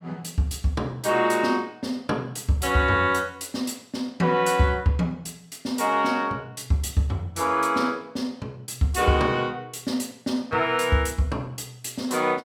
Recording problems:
none

